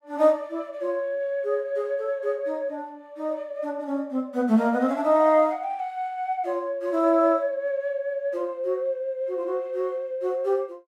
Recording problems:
none

